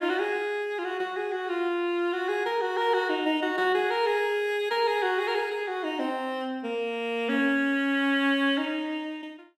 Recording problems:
none

